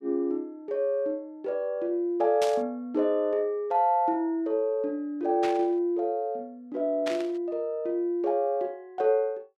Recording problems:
burst of static; at 2.5 s, at 5.5 s and at 7 s; peak -3 dB vs average level

